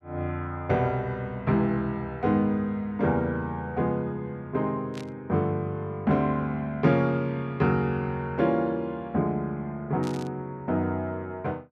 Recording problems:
burst of static; at 5 s and at 10 s; peak -11 dB vs average level

